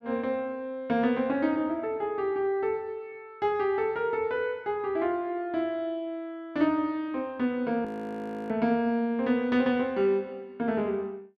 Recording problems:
frozen audio; at 8 s for 0.5 s

